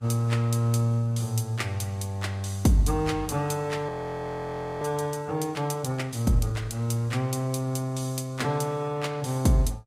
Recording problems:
lossy codec; Vorbis, log-spectral distance 2 dB, nothing above 15.5 kHz
audio freezing; at 4 s for 1 s

